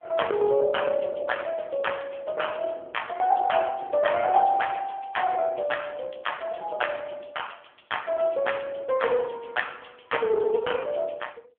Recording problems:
phone line; 260 Hz to 3.4 kHz, AMR-NB

